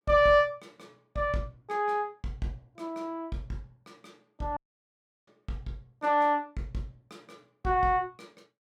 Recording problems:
audio cutting out; at 4.5 s for 0.5 s

